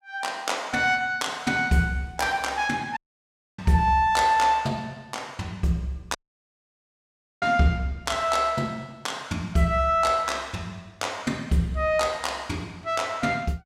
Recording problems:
audio cutting out; at 3 s for 0.5 s and at 6 s for 1.5 s

